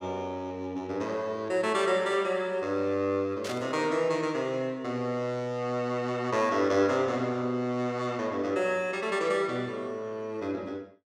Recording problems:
burst of static; at 3.5 s; peak -5 dB vs average level

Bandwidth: 16.5 kHz